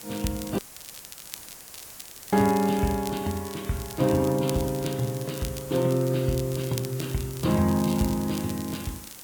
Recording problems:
codec artefacts; MP3, log-spectral distance 3 dB
background hiss; slope -1 dB per octave, SNR 15 dB
crackling; vinyl, SNR 15 dB
dropout; at 0.5 s for 1.5 s

